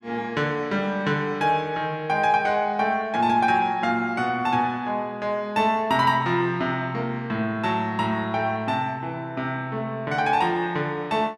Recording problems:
none

